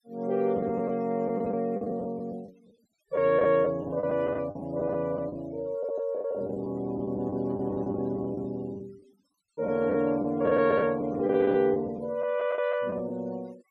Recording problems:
denoising artefacts; signal-to-artefact ratio 26 dB
lost packets; 10% of the sound replaced, filled with the last packet

